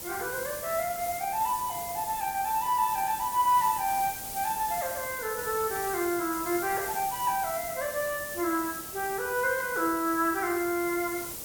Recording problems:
hiss; SNR 7 dB

